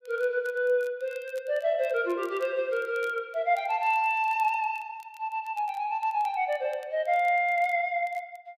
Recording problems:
crackle; vinyl, SNR 29 dB

